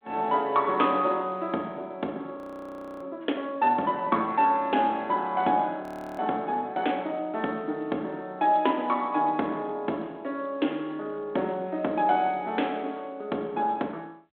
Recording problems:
phone line; 240 Hz to 3.5 kHz, G.726
audio freezing; at 2.5 s for 0.5 s and at 6 s

